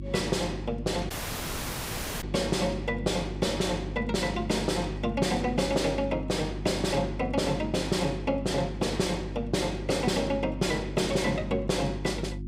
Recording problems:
distorted audio; soft clipping, signal-to-distortion ratio 11 dB
hum; 50 Hz, harmonics up to 350 Hz, SNR 9 dB
audio cutting out; at 1 s for 1 s

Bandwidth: 15.5 kHz